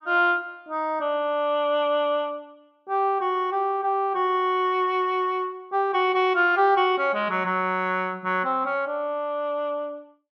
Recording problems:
none

